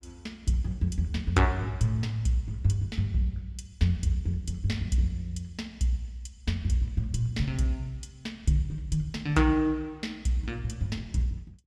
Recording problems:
none

